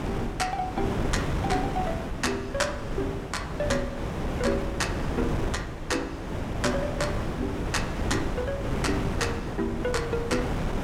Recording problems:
wind noise; below 530 Hz, SNR 0 dB

